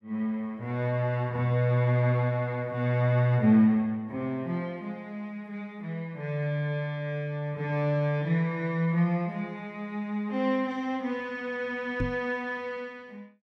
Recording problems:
microphone thump; at 12 s; peak +2 dB vs average level

